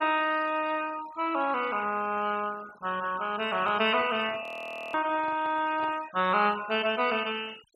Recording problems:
denoising artefacts; signal-to-artefact ratio 19 dB
handling noise; from 3.5 to 6 s; peak -11 dB vs average level
audio freezing; at 4.5 s for 0.5 s

